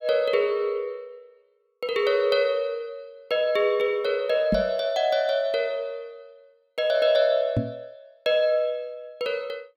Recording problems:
microphone thump; at 4.5 s and at 7.5 s; peak +3 dB vs average level

